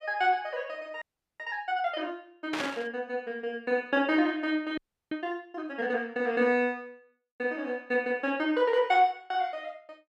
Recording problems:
frozen audio; at 1 s and at 5 s
static burst; at 2.5 s; peak 0 dB vs average level

